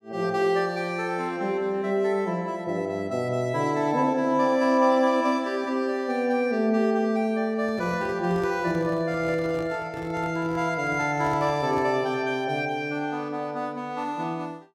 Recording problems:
handling noise; from 7.5 to 12 s; peak -9 dB vs average level

